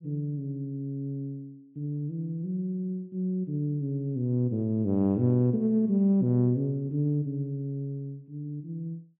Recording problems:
low-pass filter; nothing above 4 kHz

